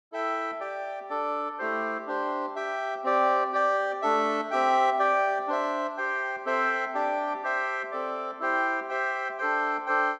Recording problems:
none

